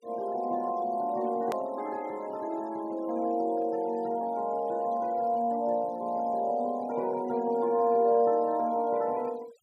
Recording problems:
noise reduction artefacts; signal-to-artefact ratio 26 dB
click at an edit; at 1.5 s

